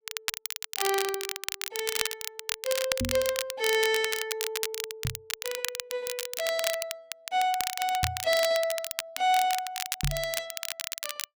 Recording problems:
crackling; vinyl, SNR 3 dB
knock on the microphone; 4 times, first at 3 s; peak +3 dB vs average level

